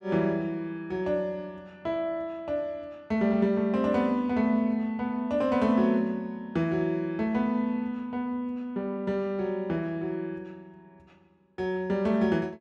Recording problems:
none

